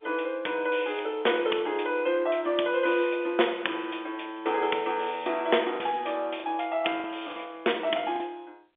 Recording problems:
telephone audio; 280 Hz to 3.6 kHz, G.711
packet loss; 2% of the sound replaced, filled with the last packet

